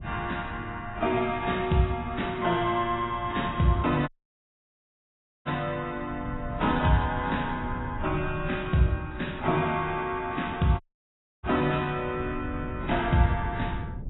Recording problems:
lossy codec; AAC, log-spectral distance 4 dB, nothing above 3.8 kHz
wind on the microphone; below 150 Hz, SNR 12 dB
audio cutting out; at 4 s for 1.5 s and at 11 s for 0.5 s

